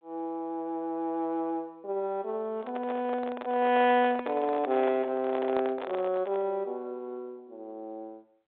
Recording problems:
telephone audio; 280 Hz to 3.9 kHz, G.726
microphone handling noise; from 2.5 to 6.5 s; peak -4 dB vs average level

